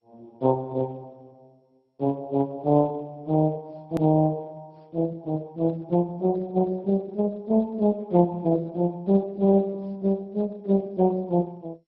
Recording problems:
lossy compression; Speex, then MP2, log-spectral distance 2 dB, nothing above 13.1 kHz
click at an edit; at 4 s

